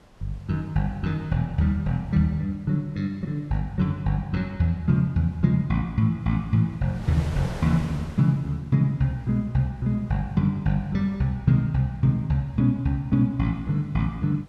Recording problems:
wind on the microphone; below 860 Hz, SNR 21 dB

